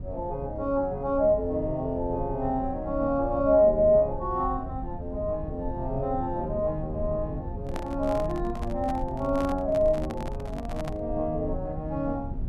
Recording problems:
low-frequency rumble; below 110 Hz, SNR 11 dB
handling noise; from 7.5 to 11 s; peak -5 dB vs average level

